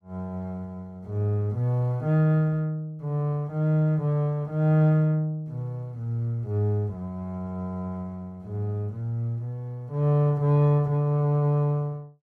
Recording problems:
none

